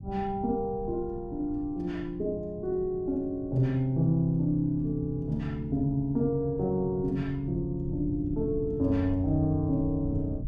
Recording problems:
low-frequency rumble; below 150 Hz, SNR 12 dB

